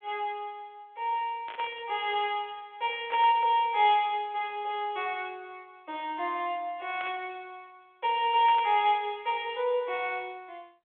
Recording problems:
phone line; 320 Hz to 3.5 kHz, G.726
static burst; 4 times, first at 1.5 s; peak -10 dB vs average level

